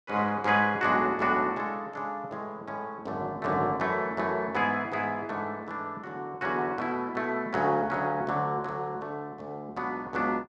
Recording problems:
none

